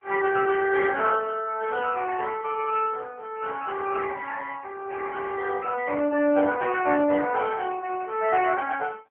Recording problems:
phone line; 260 Hz to 2.9 kHz, AMR-NB

